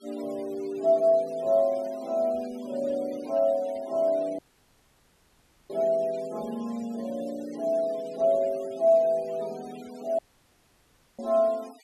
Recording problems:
noise reduction artefacts; signal-to-artefact ratio 24 dB
dropout; at 4.5 s for 1.5 s and at 10 s for 1 s

